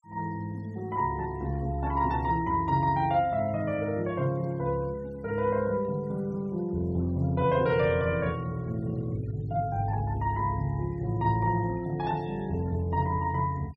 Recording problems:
noise reduction artefacts; signal-to-artefact ratio 27 dB

